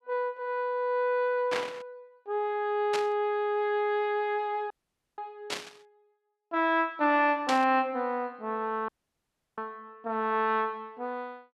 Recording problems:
static burst; 4 times, first at 1.5 s; peak +1 dB vs average level
audio cutting out; at 4.5 s and at 9 s for 0.5 s

